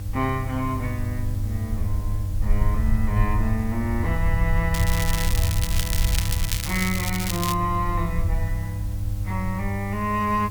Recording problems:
electrical hum; 50 Hz, harmonics up to 500 Hz, SNR 3 dB
background hiss; slope +2 dB per octave, SNR 18 dB
rumble; below 74 Hz, SNR 1 dB
crackle; from 4.5 to 7.5 s; loose cable, SNR 1 dB

